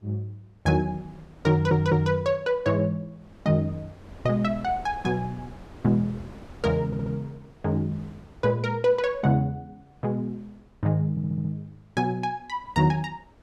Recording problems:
wind noise; below 500 Hz, SNR 22 dB
audio stuttering; at 1.5 s, at 7 s and at 11 s

